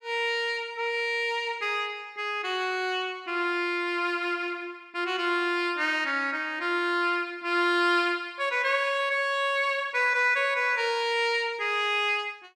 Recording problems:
none

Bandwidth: 15 kHz